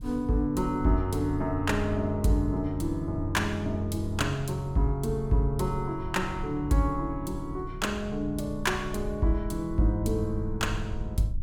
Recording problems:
low-frequency rumble; below 84 Hz, SNR 11 dB

